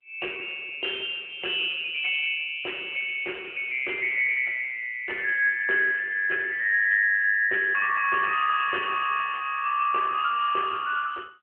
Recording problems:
phone line; 320 Hz to 3.2 kHz, AMR-NB

